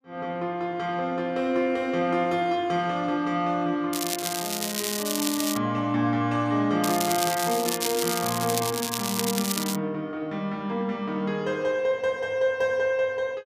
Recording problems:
crackling; from 4 to 5.5 s and from 7 to 10 s; loose cable, SNR 3 dB

